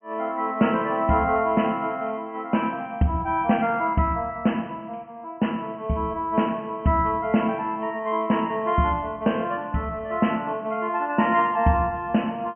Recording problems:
low-pass filter; nothing above 3.1 kHz

